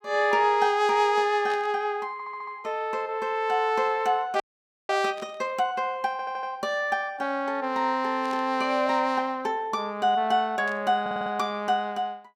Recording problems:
burst of static; 4 times, first at 1.5 s; peak -12 dB vs average level
stutter; at 2 s, at 6 s and at 11 s
audio freezing; at 4.5 s

